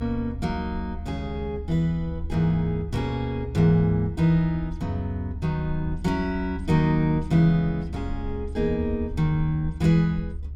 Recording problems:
low-frequency rumble; below 74 Hz, strongest tone 72 Hz, SNR 11 dB

